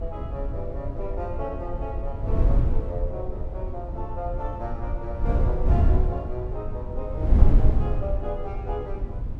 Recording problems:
wind on the microphone; below 80 Hz, SNR -7 dB

